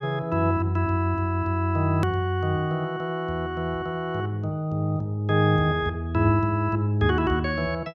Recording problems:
click at an edit; at 2 s

